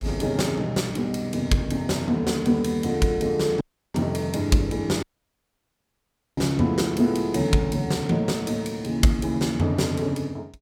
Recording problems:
audio cutting out; at 3.5 s and at 5 s for 1.5 s

